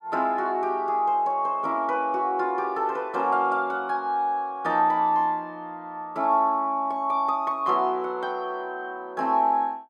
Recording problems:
none

